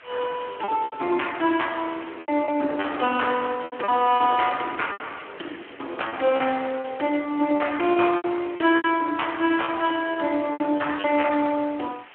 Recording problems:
telephone audio; 220 Hz to 3.3 kHz, Speex
hiss; SNR 22 dB
packet loss; 10% of the sound replaced, filled with repeated pitch periods

